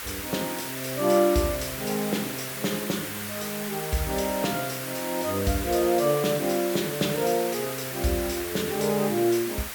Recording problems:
hiss; SNR 6 dB

